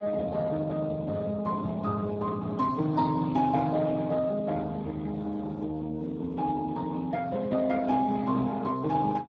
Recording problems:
codec artefacts; Speex, log-spectral distance 3 dB

